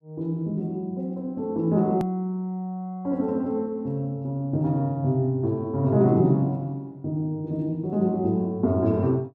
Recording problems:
hard cut with a click; at 2 s

